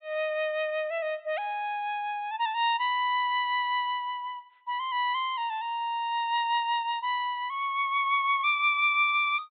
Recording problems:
treble missing; nothing above 4 kHz

